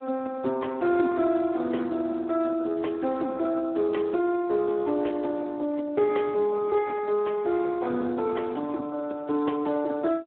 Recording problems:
telephone audio; 220 Hz to 2.8 kHz, Speex

